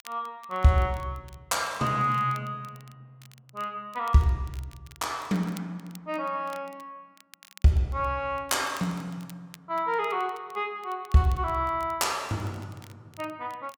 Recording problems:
crackle; vinyl, SNR 25 dB

